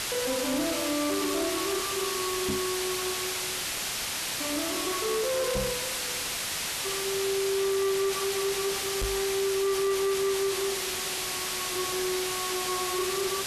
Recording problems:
distortion; soft clipping, signal-to-distortion ratio 6 dB
background hiss; SNR 1 dB
microphone bump; at 2.5 s, at 5.5 s and at 9 s; peak +4 dB vs average level

